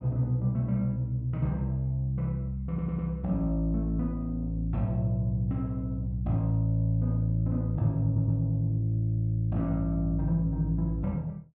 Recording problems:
stutter; at 2.5 s and at 8 s

